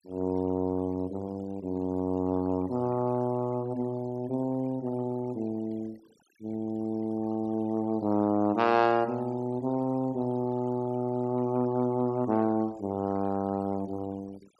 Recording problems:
denoising artefacts; signal-to-artefact ratio 25 dB

